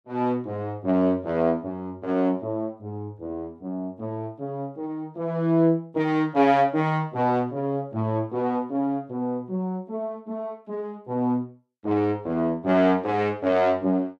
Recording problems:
none

